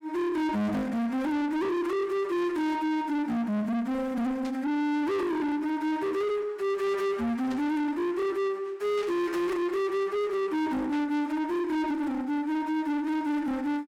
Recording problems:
distorted audio; soft clipping, signal-to-distortion ratio 8 dB
static burst; 4 times, first at 4.5 s; peak -12 dB vs average level

